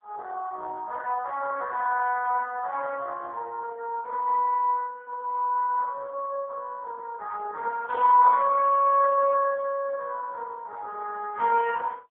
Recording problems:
telephone audio; 300 Hz to 2.8 kHz, AMR-NB

